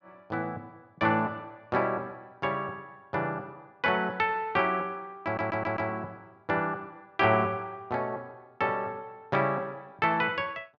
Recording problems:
stutter; at 5 s

